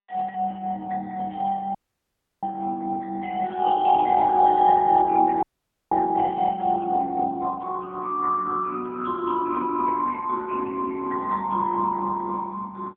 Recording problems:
telephone audio; 280 Hz to 2.2 kHz, AMR-NB
dropout; at 2 s for 0.5 s and at 5.5 s

